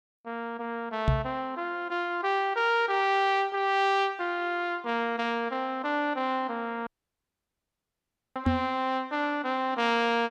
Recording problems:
microphone bump; at 1 s and at 8.5 s; peak +6 dB vs average level
audio cutting out; at 7 s for 1.5 s

